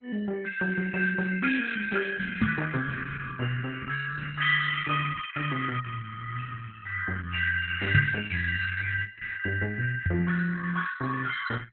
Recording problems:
lossy compression; Opus, then MP2, log-spectral distance 5 dB
microphone bump; at 2.5 s, at 8 s and at 10 s; peak +9 dB vs average level

